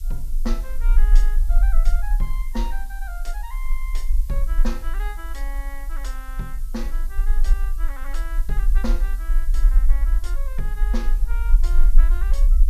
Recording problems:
hiss; slope +4 dB per octave, SNR 12 dB
rumble; below 38 Hz, strongest tone 22 Hz, SNR -12 dB

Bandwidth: 14.5 kHz